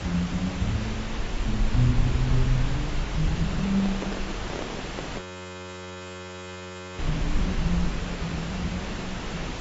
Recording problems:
codec artefacts; AAC, log-spectral distance 5 dB, nothing above 7.8 kHz
hiss; slope -4 dB per octave, SNR 6 dB
low-frequency rumble; below 42 Hz, SNR 7 dB
microphone handling noise; from 3.5 to 5 s; peak -3 dB vs average level
audio freezing; at 5 s for 2 s

